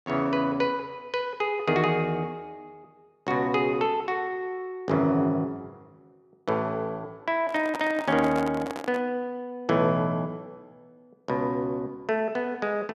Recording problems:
handling noise; from 7.5 to 9 s; peak -3 dB vs average level

